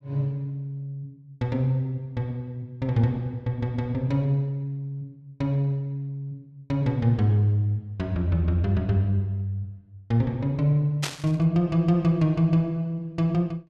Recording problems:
static burst; at 11 s; peak +1 dB vs average level

